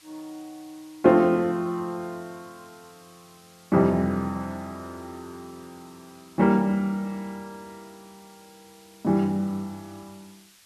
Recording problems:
hiss; slope +2 dB per octave, SNR 28 dB

